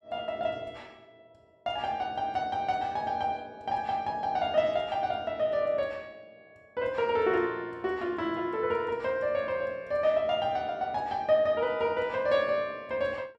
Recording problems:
none

